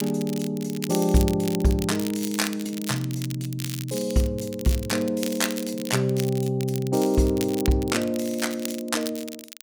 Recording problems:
crackling; vinyl, SNR 12 dB

